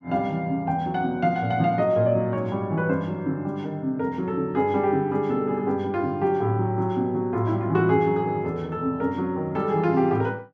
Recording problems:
none

